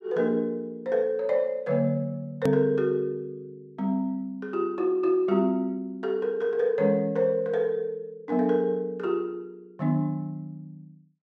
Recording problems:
edit click; at 2.5 s

